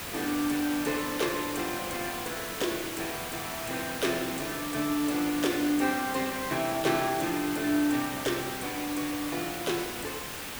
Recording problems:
hiss; slope -2 dB per octave, SNR 5 dB

